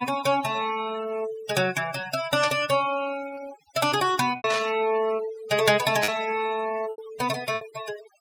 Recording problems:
denoising artefacts; signal-to-artefact ratio 13 dB
lost packets; 4% of the sound replaced, filled with repeated pitch periods
static burst; at 2.5 s, at 4.5 s and at 6 s; peak 0 dB vs average level

